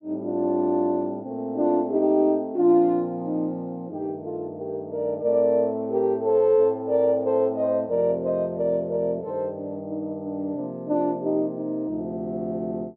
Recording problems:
none

